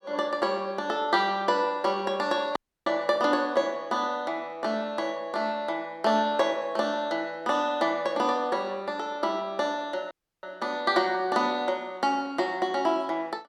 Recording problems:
audio cutting out; at 2.5 s and at 10 s

